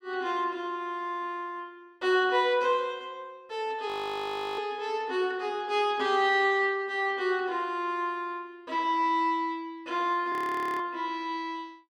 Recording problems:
audio freezing; at 4 s for 0.5 s and at 10 s

